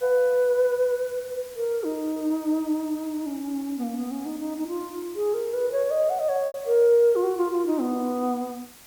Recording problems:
hiss; slope -1 dB per octave, SNR 20 dB
packet loss; 1.4% of the sound replaced, filled with repeated pitch periods

